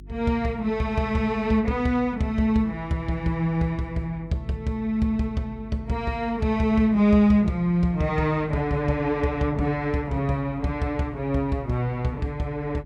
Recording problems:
hum; 50 Hz, harmonics up to 400 Hz, SNR 19 dB

